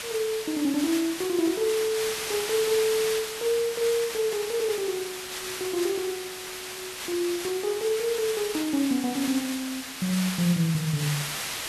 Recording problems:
background hiss; slope 0 dB per octave, SNR 6 dB

